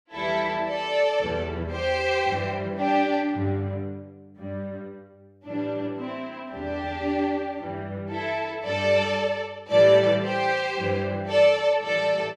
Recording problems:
none

